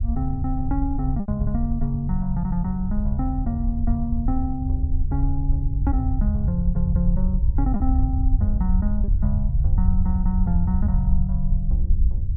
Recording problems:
low-frequency rumble; below 68 Hz, SNR -2 dB
lost packets; 1.3% of the sound replaced, filled with repeated pitch periods

